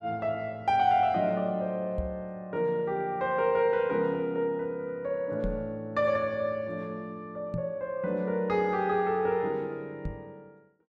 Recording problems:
microphone bump; 4 times, first at 2 s; peak -1 dB vs average level

